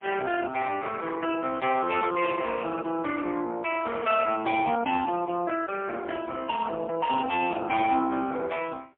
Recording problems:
telephone audio; 280 Hz to 3.3 kHz, AMR-NB, then MP3

